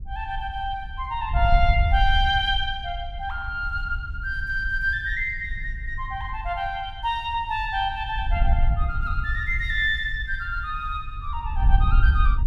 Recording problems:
wind noise; below 62 Hz, SNR 2 dB

